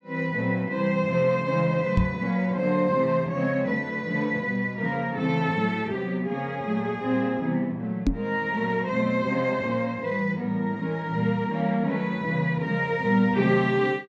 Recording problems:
knock on the microphone; at 2 s and at 8 s; peak +5 dB vs average level

